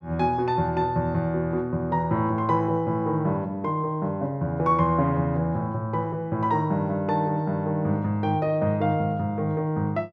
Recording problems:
none

